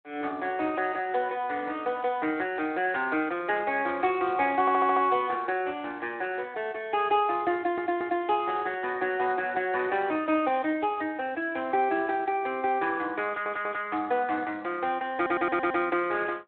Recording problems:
phone line; 260 Hz to 3.6 kHz, Speex
audio stuttering; 4 times, first at 4.5 s

